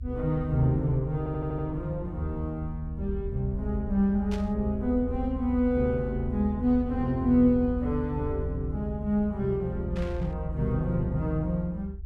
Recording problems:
low-frequency rumble; below 74 Hz, SNR 8 dB
audio stuttering; at 1 s
burst of static; at 4.5 s and at 10 s; peak -11 dB vs average level

